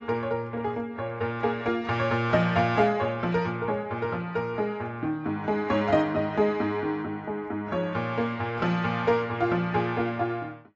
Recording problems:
lossy codec; AAC, log-spectral distance 2 dB, nothing above 7.3 kHz

